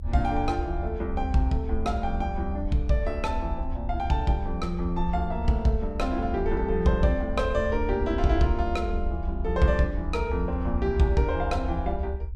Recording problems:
low-frequency rumble; below 70 Hz, SNR 5 dB

